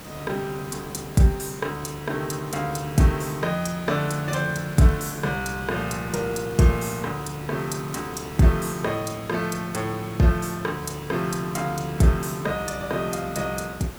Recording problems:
background hiss; slope -5 dB per octave, SNR 14 dB
crackling; from 4 to 5 s, at 6 s and at 7.5 s; loose cable, SNR 28 dB

